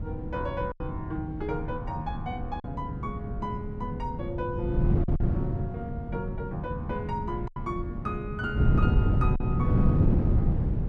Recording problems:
wind on the microphone; below 170 Hz, SNR -5 dB
packet loss; 3% of the sound replaced, filled with silence

